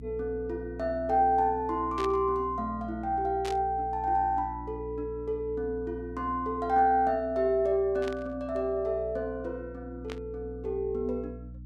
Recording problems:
mains hum; 60 Hz, harmonics up to 300 Hz, SNR 15 dB
burst of static; 4 times, first at 2 s; peak -7 dB vs average level

